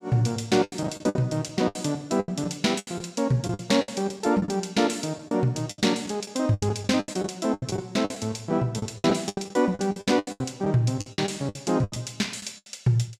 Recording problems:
lost packets; 17% of the sound replaced, filled with the last packet

